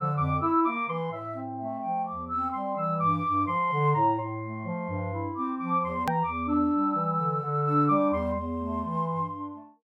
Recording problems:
edit click; at 6 s

